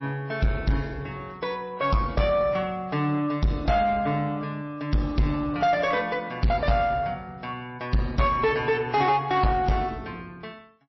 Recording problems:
lossy compression; MP3, log-spectral distance 2 dB, nothing above 5.7 kHz
distorted audio; soft clipping, signal-to-distortion ratio 7 dB

